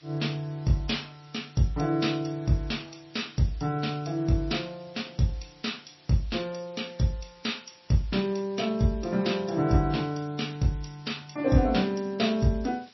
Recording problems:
lossy codec; MP3, log-spectral distance 9 dB, nothing above 5.7 kHz
background hiss; slope +1 dB per octave, SNR 27 dB

